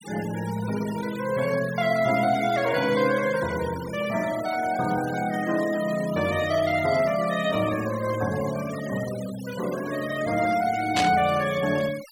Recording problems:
denoising artefacts; signal-to-artefact ratio 15 dB
static burst; at 11 s; peak +2 dB vs average level

